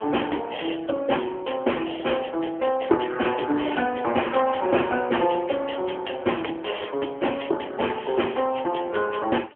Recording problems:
phone line; 260 Hz to 3.2 kHz, AMR-NB

